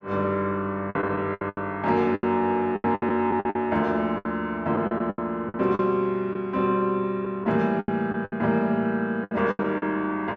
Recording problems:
packet loss; 13% of the sound replaced, filled with the last packet

